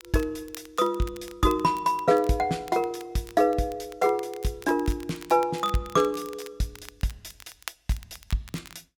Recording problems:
crackling; vinyl, SNR 20 dB

